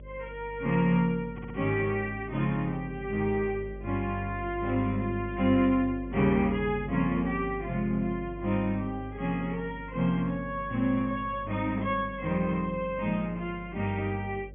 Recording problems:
treble missing; nothing above 3.4 kHz
hum; 50 Hz, harmonics up to 600 Hz, SNR 15 dB
audio stuttering; at 1.5 s

